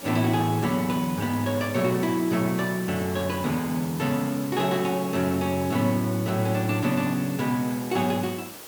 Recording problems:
background hiss; slope -3 dB per octave, SNR 14 dB

